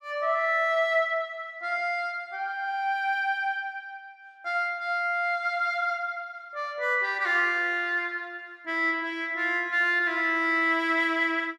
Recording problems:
none

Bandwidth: 14.5 kHz